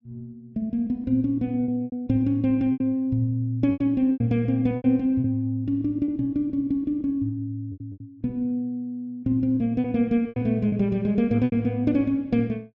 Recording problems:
packet loss; 7% of the sound replaced, filled with repeated pitch periods

